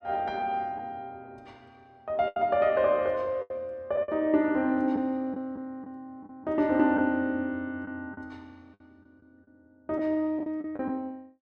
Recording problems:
packet loss; 5% of the sound replaced, filled with the last packet

